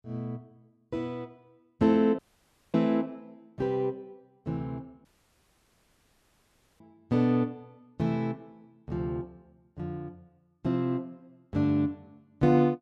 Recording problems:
dropout; at 2 s for 0.5 s and at 5 s for 2 s

